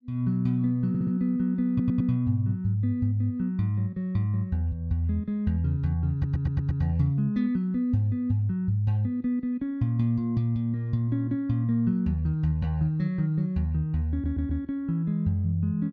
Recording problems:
stutter; 4 times, first at 1 s

